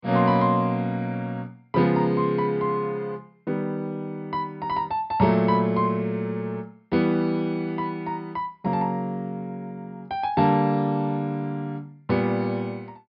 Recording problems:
treble cut off; nothing above 5.5 kHz

